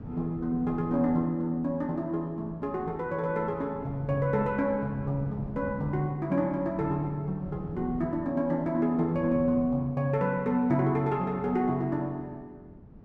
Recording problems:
wind on the microphone; below 240 Hz, SNR 16 dB

